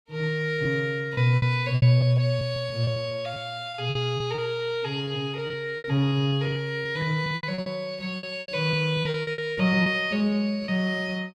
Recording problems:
lost packets; 13% of the sound replaced, filled with repeated pitch periods

